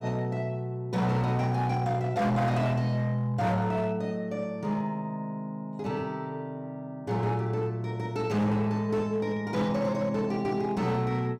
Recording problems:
distortion; hard clipping, signal-to-distortion ratio 11 dB

